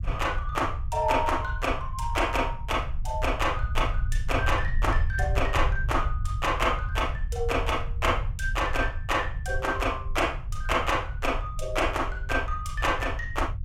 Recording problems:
low-frequency rumble; below 76 Hz, SNR 5 dB

